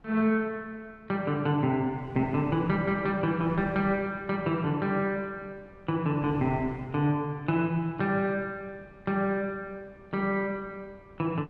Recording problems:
wind noise; below 440 Hz, SNR 21 dB

